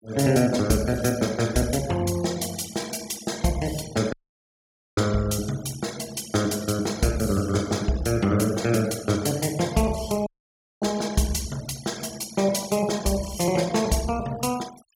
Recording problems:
denoising artefacts; signal-to-artefact ratio 18 dB
dropout; at 4 s for 1 s and at 10 s for 0.5 s

